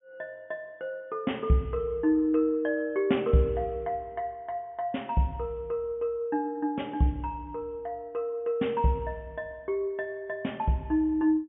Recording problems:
low-pass filter; nothing above 3.5 kHz

